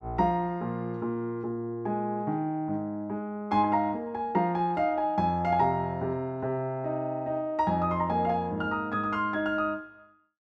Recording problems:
none

